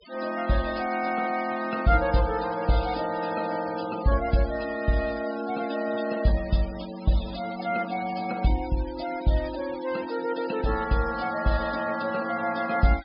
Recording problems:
treble cut off; nothing above 5.5 kHz
noise reduction artefacts; signal-to-artefact ratio 16 dB

